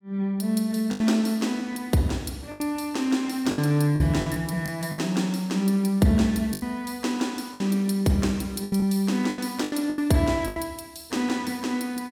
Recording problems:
lost packets; 8% of the sound replaced, filled with the last packet

